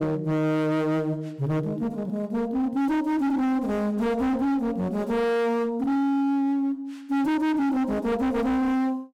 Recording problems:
distorted audio; hard clipping, uneven, signal-to-distortion ratio 7 dB

